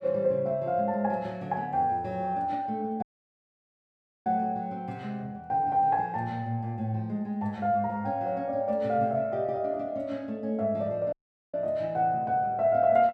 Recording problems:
dropout; at 3 s for 1 s and at 11 s

